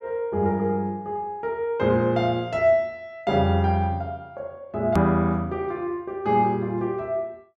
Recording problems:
click at an edit; at 5 s

